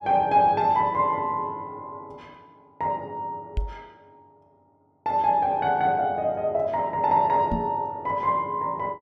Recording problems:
microphone thump; at 3.5 s and at 7.5 s; peak 0 dB vs average level

